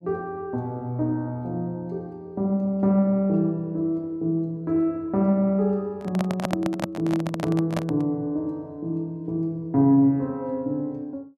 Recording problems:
microphone handling noise; from 6 to 8 s; peak +2 dB vs average level

